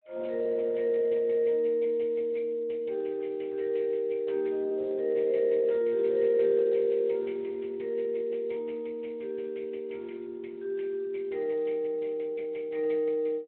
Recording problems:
phone line; 280 Hz to 3.3 kHz, Speex

